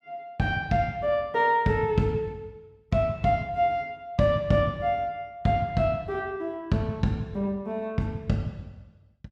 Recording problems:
none

